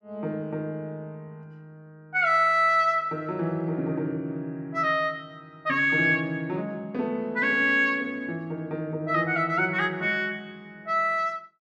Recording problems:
none

